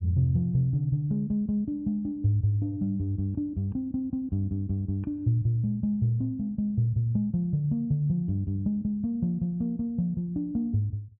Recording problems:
none

